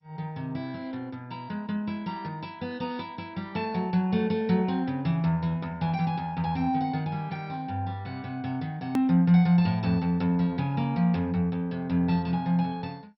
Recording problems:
codec artefacts; MP2, log-spectral distance 2 dB
click at an edit; at 9 s

